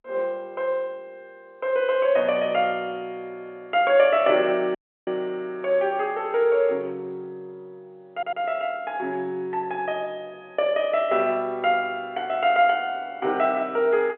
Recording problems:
phone line; 280 Hz to 3.3 kHz, G.711
audio cutting out; at 5 s
stutter; at 8 s

